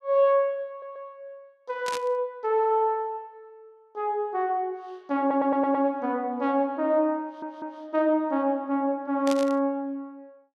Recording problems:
stutter; at 0.5 s, at 5 s and at 7 s
burst of static; at 2 s and at 9.5 s; peak -5 dB vs average level

